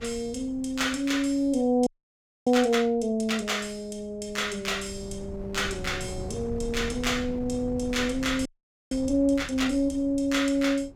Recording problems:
wind on the microphone; below 190 Hz, SNR 14 dB
frozen audio; at 2 s for 0.5 s and at 8.5 s

